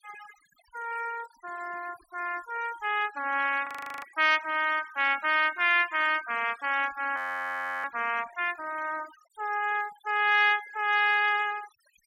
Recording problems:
denoising artefacts; signal-to-artefact ratio 19 dB
frozen audio; at 3.5 s and at 7 s for 0.5 s

